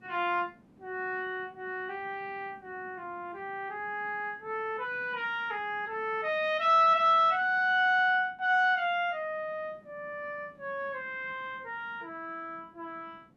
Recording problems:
hiss; slope -9 dB per octave, SNR 30 dB

